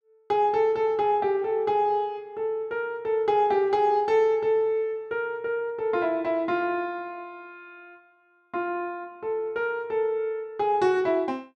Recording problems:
none

